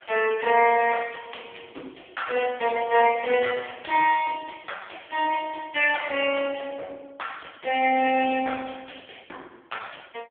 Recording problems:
phone line; 320 Hz to 3.4 kHz, AMR-NB

